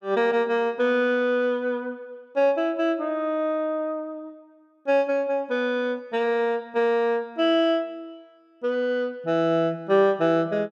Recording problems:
none

